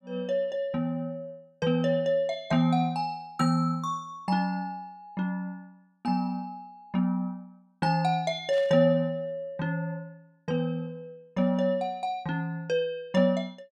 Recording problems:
static burst; at 8.5 s; peak -14 dB vs average level

